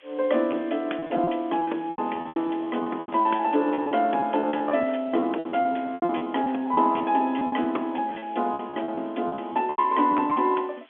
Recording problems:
telephone audio; 220 Hz to 3.4 kHz, G.711
background hiss; SNR 29 dB
lost packets; 17% of the sound replaced, filled with repeated pitch periods

